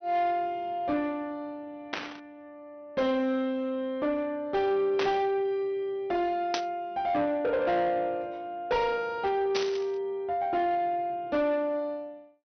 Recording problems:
treble cut off; nothing above 6.1 kHz
distortion; soft clipping, signal-to-distortion ratio 11 dB
burst of static; 4 times, first at 2 s; peak +2 dB vs average level

